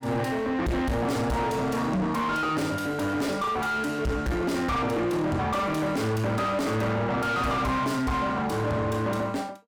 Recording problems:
distorted audio; soft clipping, signal-to-distortion ratio 5 dB

